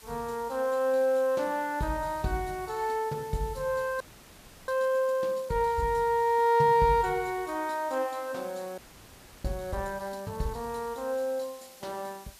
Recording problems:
hiss; slope 0 dB per octave, SNR 22 dB
audio freezing; at 4 s for 0.5 s and at 9 s for 0.5 s

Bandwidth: 14.5 kHz